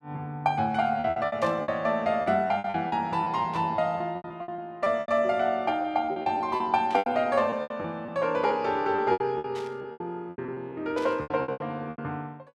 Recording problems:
lost packets; 15% of the sound replaced, filled with repeated pitch periods
burst of static; 5 times, first at 1.5 s; peak -11 dB vs average level

